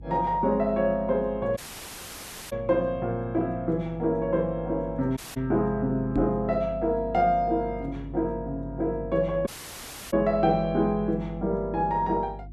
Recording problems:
electrical hum; 50 Hz, harmonics up to 350 Hz, SNR 15 dB
dropout; at 1.5 s for 1 s, at 5 s and at 9.5 s for 0.5 s
microphone bump; at 6 s; peak +3 dB vs average level

